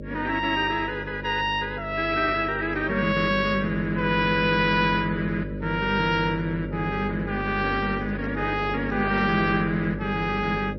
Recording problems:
lossy codec; MP3, log-spectral distance 2 dB, nothing above 5 kHz
hum; 50 Hz, harmonics up to 600 Hz, SNR 9 dB
microphone handling noise; from 8 to 9.5 s; peak -11 dB vs average level

